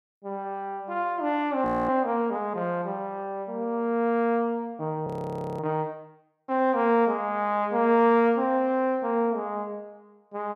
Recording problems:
frozen audio; at 1.5 s and at 5 s for 0.5 s

